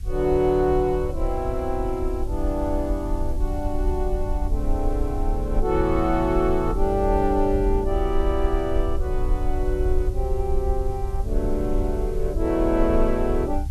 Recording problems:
background hiss; slope +2 dB per octave, SNR 27 dB
low-frequency rumble; below 56 Hz, SNR 4 dB

